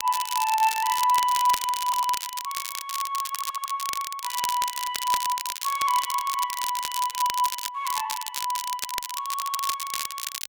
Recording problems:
crackle; vinyl, SNR 5 dB
audio stuttering; at 2 s, at 3.5 s and at 9.5 s

